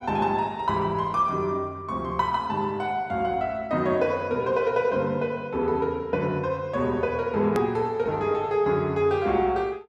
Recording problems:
click at an edit; at 7.5 s

